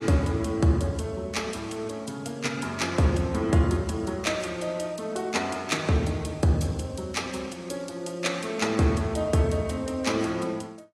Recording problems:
lossy codec; AAC, log-spectral distance 3 dB, nothing above 11.6 kHz

